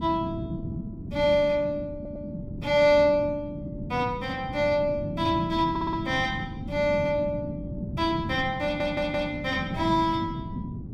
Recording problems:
wind noise; below 240 Hz, SNR 9 dB
stutter; at 2 s, at 5.5 s and at 8.5 s

